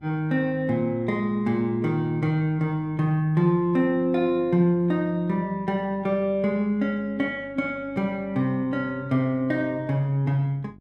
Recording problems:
mains hum; 50 Hz, harmonics up to 700 Hz, SNR 25 dB

